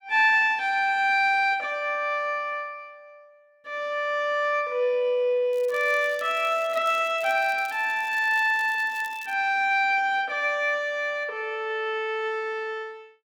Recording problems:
crackling; from 5.5 to 9.5 s; loose cable, SNR 23 dB

